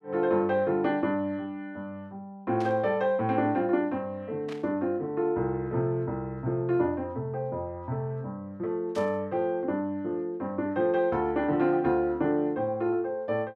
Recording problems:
static burst; at 2.5 s, at 4.5 s and at 9 s; peak -11 dB vs average level

